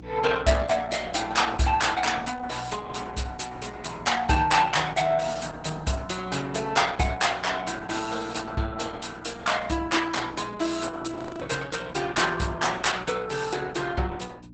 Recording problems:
codec artefacts; Opus, log-spectral distance 6 dB, nothing above 8 kHz
electrical hum; 60 Hz, harmonics up to 300 Hz, SNR 18 dB
frozen audio; at 11 s

